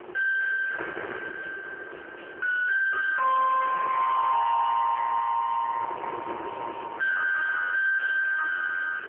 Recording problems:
telephone audio; 990 Hz to 2.5 kHz, AMR-NB
distortion; soft clipping, signal-to-distortion ratio 6 dB
wind noise; below 1.6 kHz, SNR 13 dB

